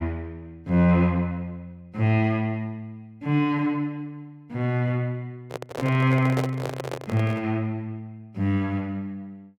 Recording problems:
microphone handling noise; from 5.5 to 7.5 s; peak 0 dB vs average level

